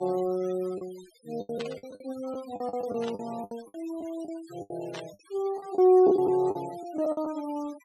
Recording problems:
denoising artefacts; signal-to-artefact ratio 21 dB
lost packets; 12% of the sound replaced, filled with the last packet
burst of static; at 1.5 s, at 3 s and at 5 s; peak -9 dB vs average level

